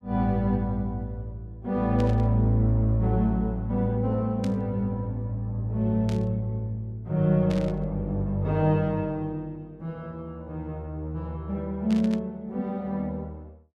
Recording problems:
static burst; 5 times, first at 2 s; peak -10 dB vs average level

